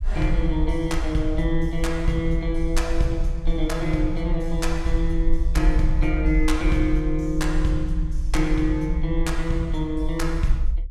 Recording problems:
low-frequency rumble; below 48 Hz, SNR 2 dB

